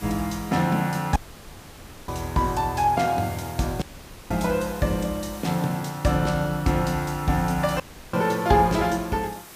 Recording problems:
hiss; slope -2 dB per octave, SNR 18 dB
audio cutting out; at 1 s for 1 s, at 4 s and at 8 s

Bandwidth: 15 kHz